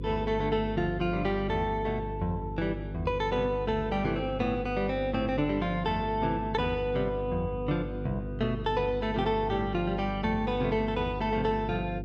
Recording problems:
electrical hum; 50 Hz, harmonics up to 500 Hz, SNR 8 dB

